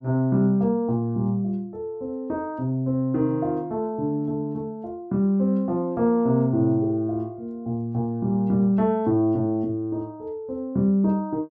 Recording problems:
none

